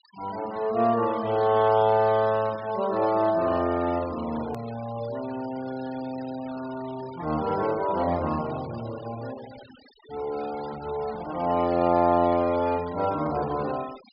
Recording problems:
low-pass filter; nothing above 5.5 kHz
noise reduction artefacts; signal-to-artefact ratio 18 dB
hard cut with a click; at 4.5 s

